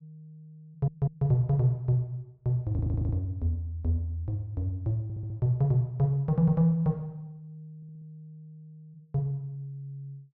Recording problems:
audio stuttering; 4 times, first at 0.5 s

